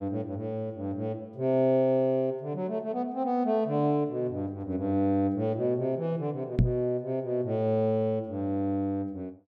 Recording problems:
knock on the microphone; at 6.5 s; peak +9 dB vs average level

